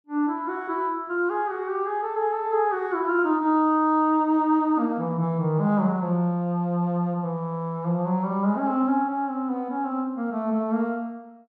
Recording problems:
none

